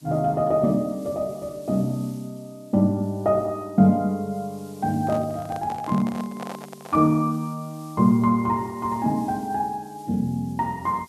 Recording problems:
hiss; SNR 27 dB
handling noise; from 5 to 7 s; peak -7 dB vs average level

